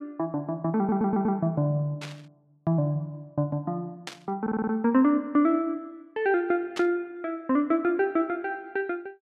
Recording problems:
stutter; at 1 s and at 4.5 s
burst of static; at 2 s, at 4 s and at 7 s; peak -5 dB vs average level

